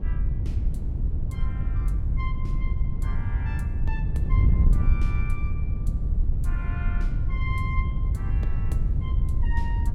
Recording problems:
wind noise; below 86 Hz, SNR -13 dB

